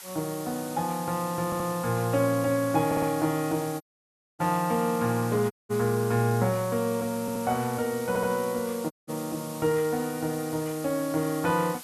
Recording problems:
background hiss; SNR 13 dB
stutter; 4 times, first at 1.5 s
dropout; at 4 s for 0.5 s, at 5.5 s and at 9 s

